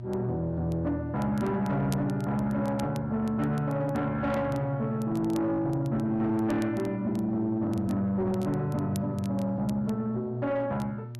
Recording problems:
distorted audio; soft clipping, signal-to-distortion ratio 12 dB
hum; 60 Hz, harmonics up to 600 Hz, SNR 10 dB
crackle; vinyl, SNR 24 dB

